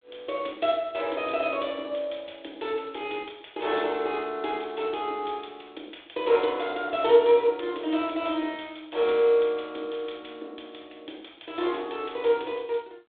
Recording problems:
phone line; 280 Hz to 3.7 kHz, G.726

